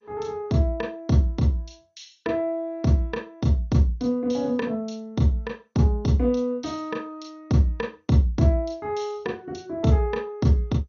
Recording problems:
lossy codec; MP2, log-spectral distance 2 dB, nothing above 6.3 kHz

